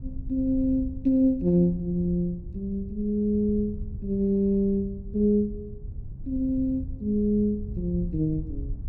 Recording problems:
wind on the microphone; below 100 Hz, SNR 13 dB

